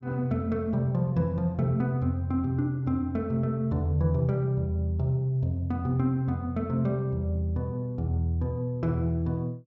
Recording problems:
treble missing; nothing above 8 kHz

